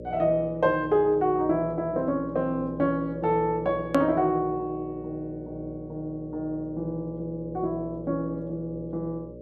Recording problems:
mains hum; 60 Hz, harmonics up to 600 Hz, SNR 14 dB
click at an edit; at 4 s

